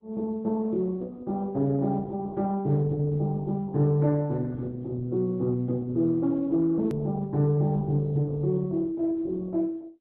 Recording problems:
lossy compression; Opus, log-spectral distance 2 dB, nothing above 13.1 kHz
edit click; at 7 s

